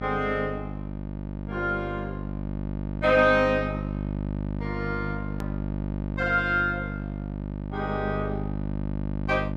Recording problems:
electrical hum; 50 Hz, harmonics up to 950 Hz, SNR 6 dB
hard cut with a click; at 5.5 s

